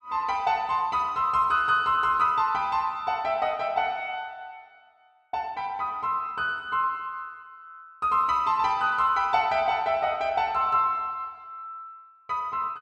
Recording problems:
none

